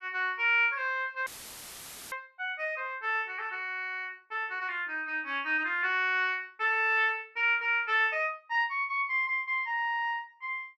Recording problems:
audio cutting out; at 1.5 s for 1 s; filled with static

